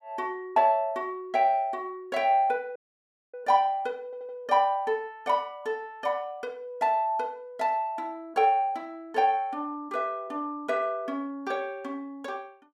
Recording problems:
audio cutting out; at 3 s for 0.5 s
stutter; at 4 s

